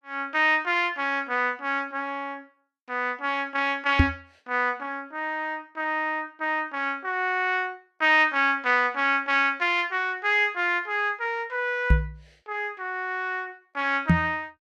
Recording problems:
microphone bump; at 4 s, at 12 s and at 14 s; peak +9 dB vs average level

